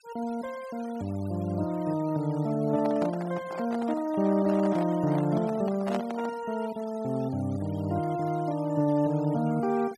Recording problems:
denoising artefacts; signal-to-artefact ratio 21 dB
microphone handling noise; from 2.5 to 6.5 s; peak -1 dB vs average level

